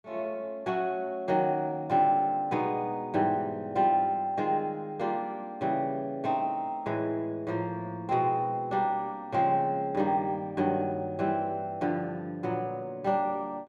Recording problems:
none

